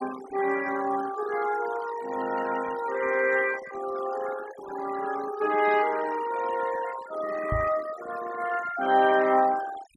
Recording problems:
denoising artefacts; signal-to-artefact ratio 14 dB
microphone bump; at 7.5 s; peak 0 dB vs average level

